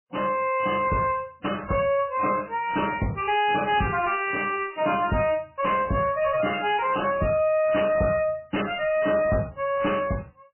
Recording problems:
lossy compression; MP3, log-spectral distance 7 dB, nothing above 2.6 kHz
distortion; soft clipping, signal-to-distortion ratio 9 dB

